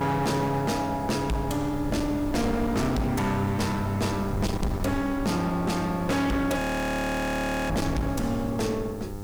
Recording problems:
distortion; hard clipping, signal-to-distortion ratio 8 dB
electrical hum; 50 Hz, harmonics up to 1.7 kHz, SNR 12 dB
background hiss; slope +1 dB per octave, SNR 24 dB
wind noise; below 200 Hz, SNR 10 dB
frozen audio; at 6.5 s for 1 s

